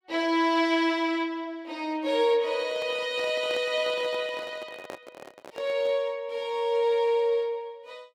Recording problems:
handling noise; from 2.5 to 6 s; peak -9 dB vs average level

